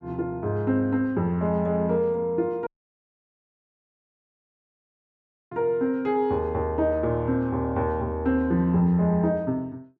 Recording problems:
audio cutting out; at 2.5 s for 3 s

